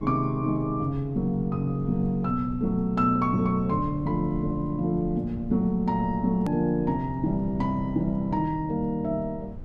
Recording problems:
low-frequency rumble; below 110 Hz, SNR 16 dB
hard cut with a click; at 6.5 s

